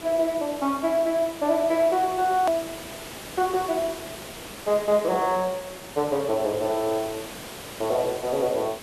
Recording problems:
background hiss; slope -3 dB per octave, SNR 13 dB
hard cut with a click; at 2.5 s

